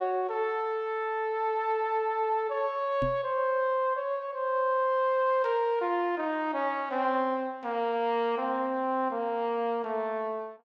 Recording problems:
knock on the microphone; at 3 s; peak -2 dB vs average level

